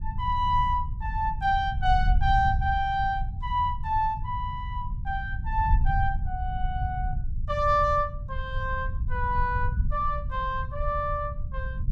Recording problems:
rumble; below 86 Hz, SNR 4 dB

